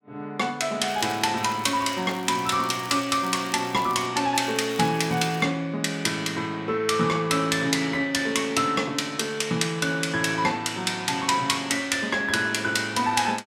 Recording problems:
crackle; at 1 s, from 1.5 to 4 s and from 4.5 to 5.5 s; loose cable, SNR 21 dB

